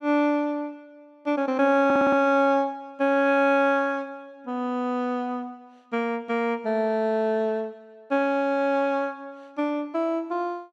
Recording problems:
stutter; at 2 s

